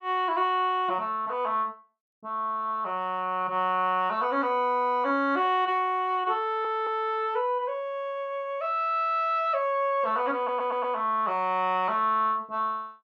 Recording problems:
audio stuttering; at 6.5 s and at 10 s

